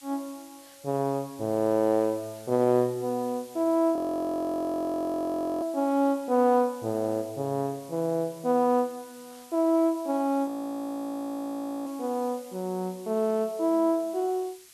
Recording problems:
background hiss; slope +3 dB per octave, SNR 23 dB
frozen audio; at 4 s for 1.5 s and at 10 s for 1.5 s

